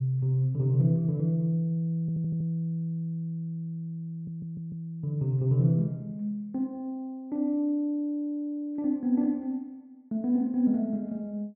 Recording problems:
audio stuttering; at 2 s and at 4 s

